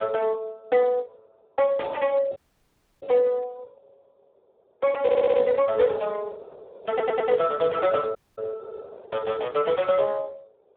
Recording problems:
telephone audio; 300 Hz to 2.5 kHz, Speex
wind on the microphone; below 590 Hz, SNR 21 dB
dropout; at 2.5 s for 0.5 s and at 8 s
audio stuttering; at 5 s and at 7 s

